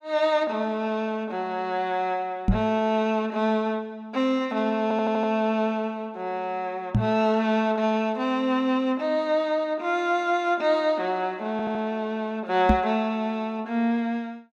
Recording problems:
microphone bump; at 2.5 s, at 7 s and at 13 s; peak +8 dB vs average level
stutter; at 5 s and at 12 s

